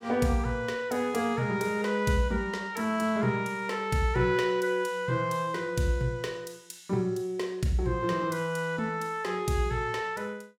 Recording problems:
none

